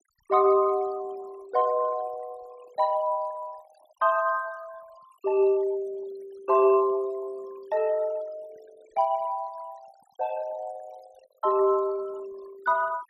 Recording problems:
denoising artefacts; signal-to-artefact ratio 25 dB

